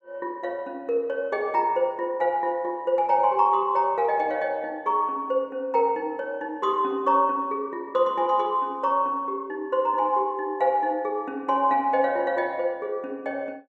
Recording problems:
none

